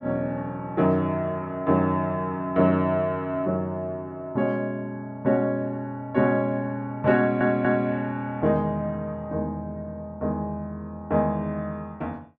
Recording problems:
stutter; at 7 s

